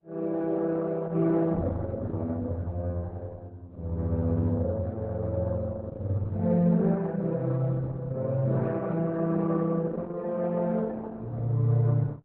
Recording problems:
lossy codec; Vorbis, then Opus, log-spectral distance 2 dB

